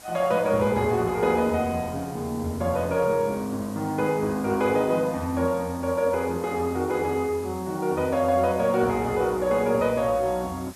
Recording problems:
hiss; slope -2 dB per octave, SNR 21 dB

